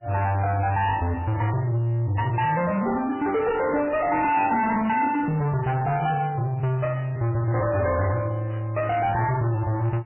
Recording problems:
codec artefacts; MP3, log-spectral distance 3 dB, nothing above 2.7 kHz
distorted audio; soft clipping, signal-to-distortion ratio 8 dB

